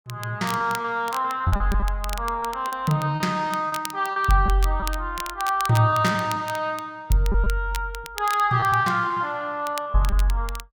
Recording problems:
crackling; vinyl, SNR 15 dB
lost packets; 8% of the sound replaced, filled with repeated pitch periods

